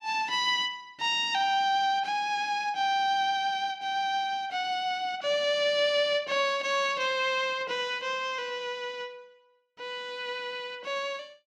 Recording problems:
none

